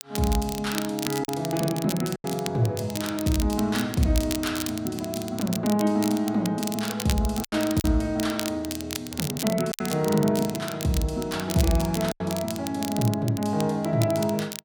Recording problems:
crackling; vinyl, SNR 9 dB
packet loss; 3% of the sound replaced, filled with silence

